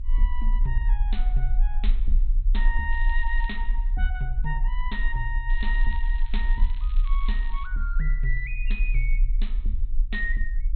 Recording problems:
treble missing; nothing above 4.2 kHz
rumble; below 36 Hz, strongest tone 32 Hz, SNR -7 dB
crackling; at 3 s and from 5.5 to 7.5 s; loose cable, SNR 18 dB

